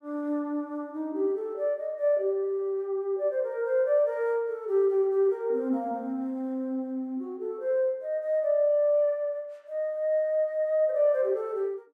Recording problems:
none

